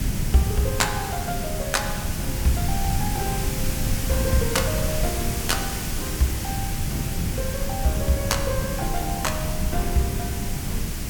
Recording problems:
hiss; slope -1 dB per octave, SNR 4 dB
low-frequency rumble; below 150 Hz, SNR 2 dB

